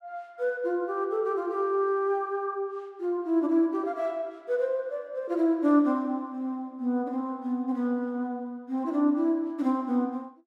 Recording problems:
none

